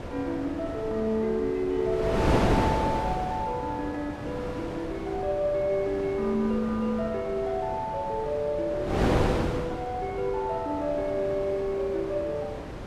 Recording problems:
wind on the microphone; below 690 Hz, SNR 3 dB

